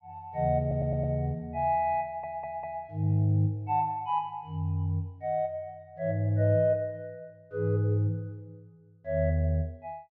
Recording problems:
audio stuttering; at 0.5 s and at 2 s

